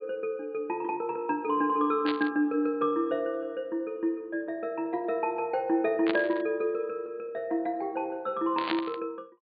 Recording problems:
low-pass filter; nothing above 4.7 kHz
burst of static; at 2 s, at 6 s and at 8.5 s; peak +2 dB vs average level

